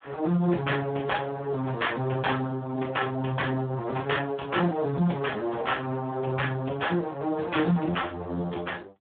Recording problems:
telephone audio; 190 Hz to 3.4 kHz, Speex

